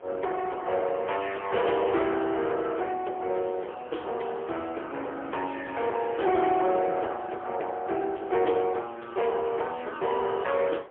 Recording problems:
telephone audio; 300 Hz to 3.3 kHz, AMR-NB, then MP3
distorted audio; soft clipping, signal-to-distortion ratio 11 dB
wind noise; below 900 Hz, SNR 22 dB

